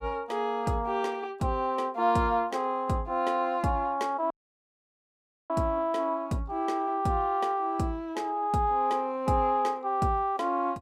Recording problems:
dropout; at 4.5 s for 1 s

